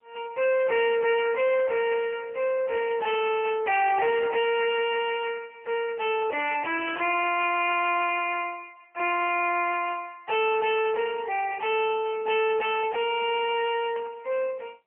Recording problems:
phone line; 340 Hz to 3.1 kHz, AMR-NB, then MP3
distortion; soft clipping, signal-to-distortion ratio 10 dB
burst of static; at 2 s and at 14 s; peak -13 dB vs average level

